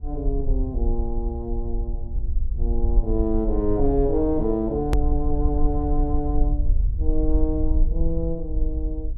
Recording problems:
low-frequency rumble; below 52 Hz, SNR 0 dB
edit click; at 5 s

